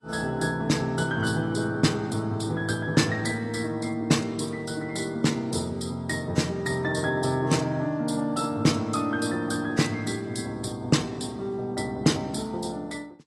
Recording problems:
codec artefacts; AAC, log-spectral distance 3 dB, nothing above 11.3 kHz

